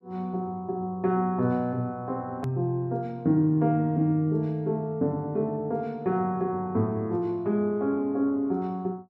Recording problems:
hard cut with a click; at 2.5 s

